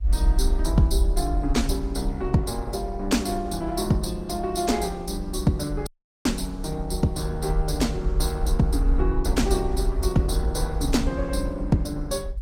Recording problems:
lossy codec; Opus, log-spectral distance 2 dB, nothing above 16.5 kHz
rumble; below 56 Hz, SNR 2 dB
dropout; at 6 s

